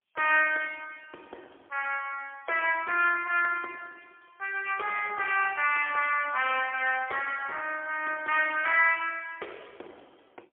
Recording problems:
phone line; 320 Hz to 3.3 kHz, AMR-NB, then MP3

